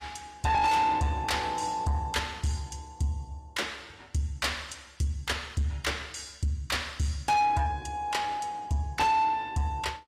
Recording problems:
lossy codec; AAC, log-spectral distance 3 dB, nothing above 14.7 kHz
distorted audio; soft clipping, signal-to-distortion ratio 8 dB

